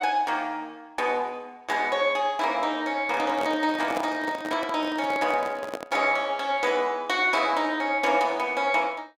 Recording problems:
handling noise; from 3 to 6 s; peak -2 dB vs average level

